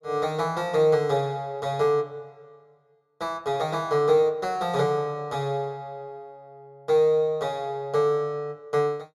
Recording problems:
none

